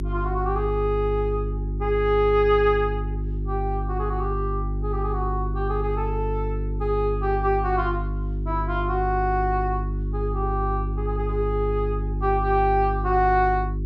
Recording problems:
hum; 50 Hz, harmonics up to 400 Hz, SNR 3 dB

